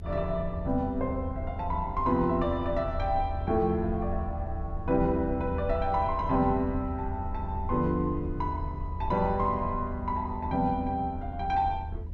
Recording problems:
rumble; below 82 Hz, SNR 7 dB

